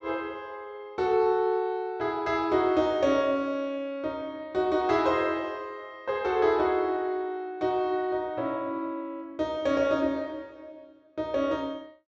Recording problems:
low-pass filter; nothing above 8 kHz

